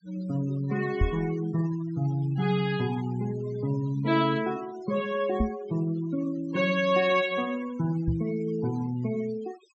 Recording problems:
treble missing; nothing above 8 kHz
denoising artefacts; signal-to-artefact ratio 19 dB
microphone thump; at 1 s, at 5.5 s and at 8 s; peak +6 dB vs average level

